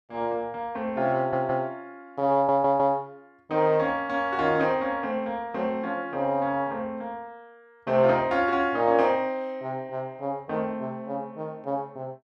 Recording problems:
audio stuttering; at 1 s and at 2.5 s

